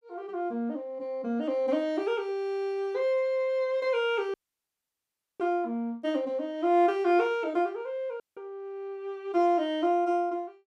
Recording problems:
dropout; at 4.5 s for 1 s and at 8 s

